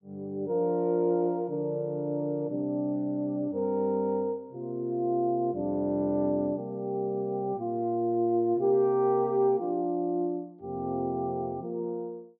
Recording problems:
none

